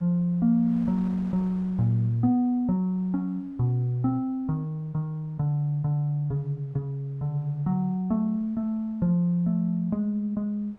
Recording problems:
wind noise; below 710 Hz, SNR 28 dB

